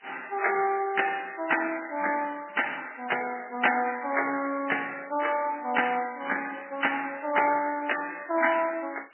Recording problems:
codec artefacts; MP3, log-spectral distance 13 dB, nothing above 3 kHz
background hiss; SNR 28 dB

